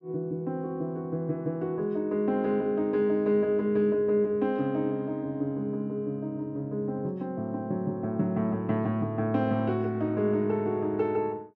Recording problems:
none

